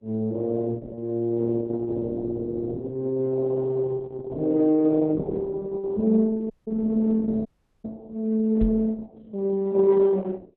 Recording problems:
lossy compression; Opus, log-spectral distance 2 dB
dropout; at 6.5 s and at 7.5 s
microphone bump; at 8.5 s; peak 0 dB vs average level

